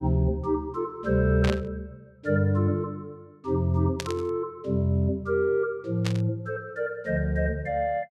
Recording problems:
burst of static; at 1.5 s, at 4 s and at 6 s; peak -2 dB vs average level

